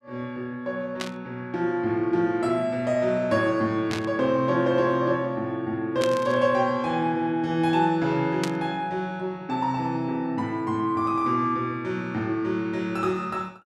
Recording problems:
static burst; 4 times, first at 1 s; peak -1 dB vs average level

